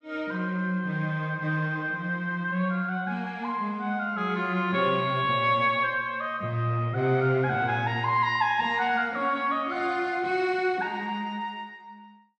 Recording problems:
none

